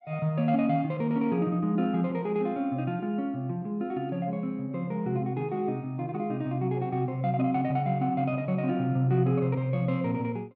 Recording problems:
none

